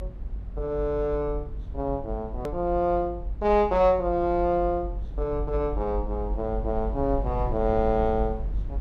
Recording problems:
low-frequency rumble; below 56 Hz, strongest tone 46 Hz, SNR 8 dB
click at an edit; at 2.5 s

